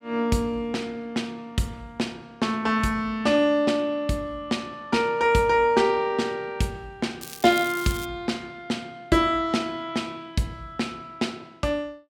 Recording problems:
crackling; at 7 s; loose cable, SNR 13 dB

